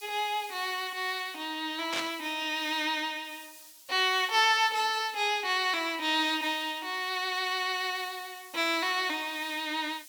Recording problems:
hiss; SNR 20 dB
static burst; at 2 s; peak -1 dB vs average level

